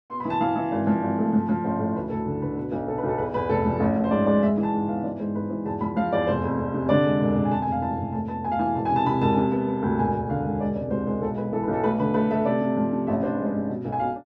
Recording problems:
none

